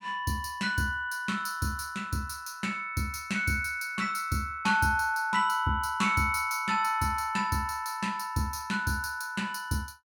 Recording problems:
none

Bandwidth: 18 kHz